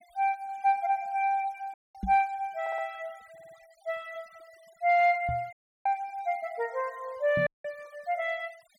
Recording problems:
noise reduction artefacts; signal-to-artefact ratio 28 dB
audio cutting out; at 1.5 s, at 5.5 s and at 7.5 s
microphone bump; at 2 s, at 5.5 s and at 7.5 s; peak -2 dB vs average level
audio stuttering; at 2.5 s and at 3.5 s

